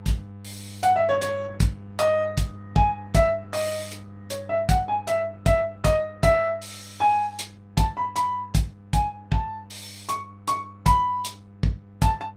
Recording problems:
codec artefacts; Opus, log-spectral distance 3 dB, nothing above 18.3 kHz
hum; 50 Hz, harmonics up to 1.3 kHz, SNR 19 dB

